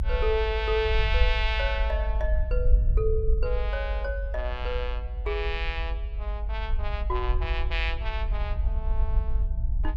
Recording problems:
low-frequency rumble; below 60 Hz, SNR -2 dB

